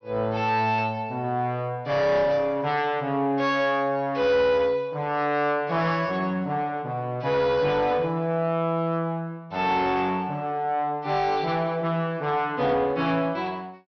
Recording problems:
low-pass filter; nothing above 6 kHz
distorted audio; soft clipping, signal-to-distortion ratio 11 dB

